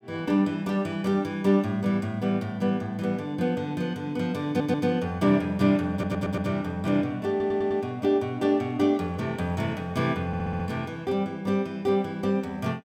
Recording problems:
audio stuttering; 4 times, first at 4.5 s

